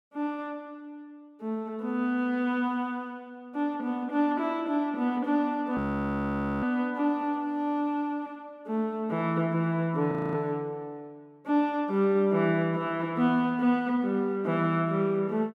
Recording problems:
frozen audio; at 6 s for 1 s and at 10 s

